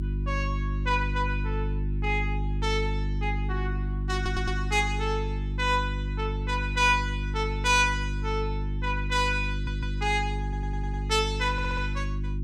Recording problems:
hum; 50 Hz, harmonics up to 350 Hz, SNR 2 dB
audio stuttering; 4 times, first at 4 s

